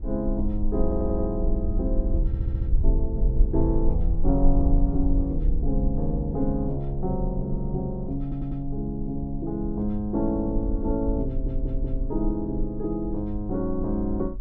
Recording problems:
rumble; below 50 Hz, strongest tone 22 Hz, SNR 2 dB
stutter; 4 times, first at 1 s

